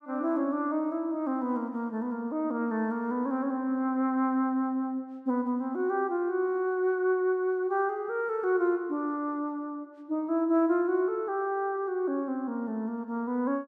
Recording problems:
none

